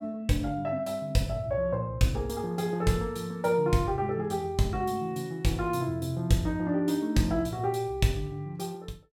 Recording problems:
none

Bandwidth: 17.5 kHz